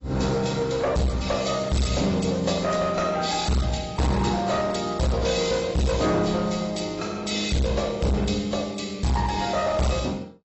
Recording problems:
lossy compression; AAC, log-spectral distance 7 dB, nothing above 7.8 kHz
distortion; hard clipping, uneven, signal-to-distortion ratio 5 dB

